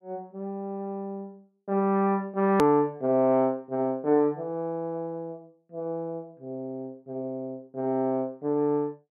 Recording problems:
edit click; at 2.5 s

